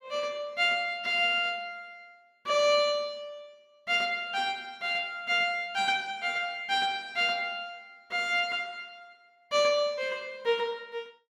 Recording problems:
none

